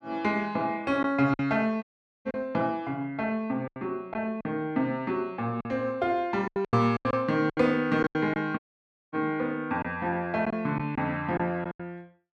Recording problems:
packet loss; 8% of the sound replaced, filled with silence
audio cutting out; at 2 s and at 8.5 s for 0.5 s

